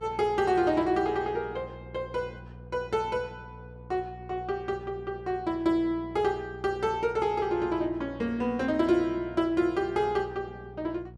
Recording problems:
hum; 60 Hz, harmonics up to 720 Hz, SNR 18 dB

